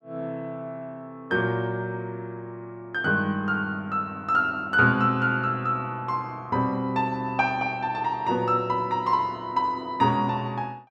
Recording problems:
none

